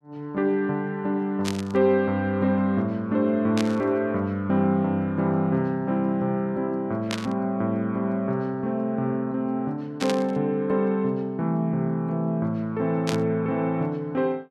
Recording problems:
static burst; 5 times, first at 1.5 s; peak -1 dB vs average level

